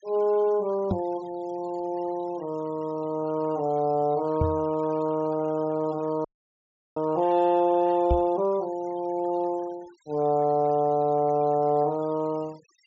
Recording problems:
treble cut off; nothing above 8 kHz
noise reduction artefacts; signal-to-artefact ratio 26 dB
microphone bump; at 1 s, at 4.5 s and at 8 s; peak +3 dB vs average level
audio freezing; at 6.5 s for 0.5 s

